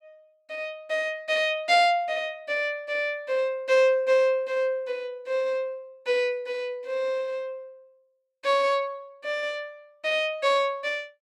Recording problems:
none

